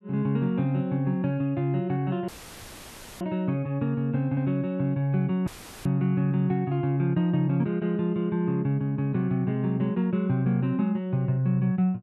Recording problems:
audio cutting out; at 2.5 s for 1 s and at 5.5 s; filled with static

